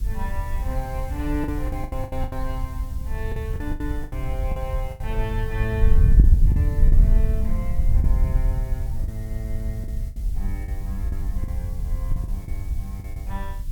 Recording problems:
background hiss; slope +3 dB per octave, SNR 16 dB
wind on the microphone; below 72 Hz, SNR -8 dB
lost packets; 10% of the sound replaced, filled with the last packet

